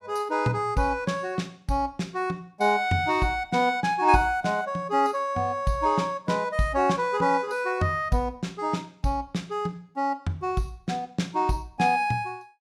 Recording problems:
none

